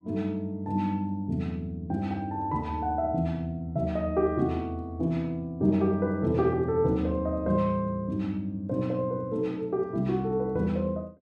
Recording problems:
none

